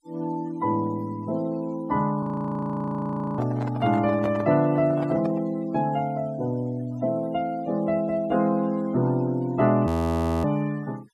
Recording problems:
denoising artefacts; signal-to-artefact ratio 24 dB
audio freezing; at 2 s for 1 s and at 10 s for 0.5 s
microphone handling noise; from 3.5 to 5.5 s; peak -5 dB vs average level

